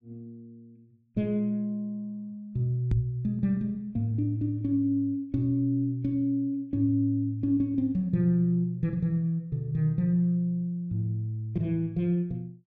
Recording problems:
microphone bump; at 3 s; peak +8 dB vs average level

